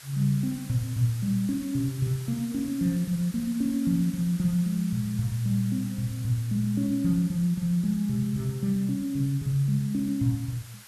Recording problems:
hiss; SNR 18 dB

